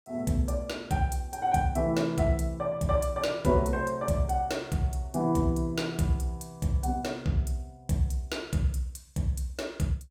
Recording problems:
none

